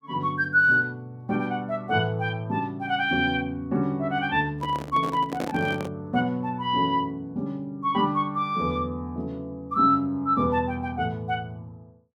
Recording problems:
handling noise; from 4.5 to 6 s; peak -2 dB vs average level

